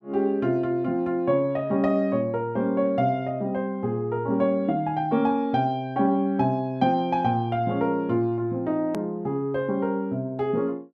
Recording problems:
click at an edit; at 9 s

